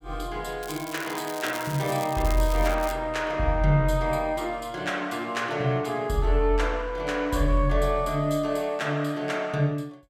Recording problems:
crackling; from 0.5 to 3 s; loose cable, SNR 13 dB

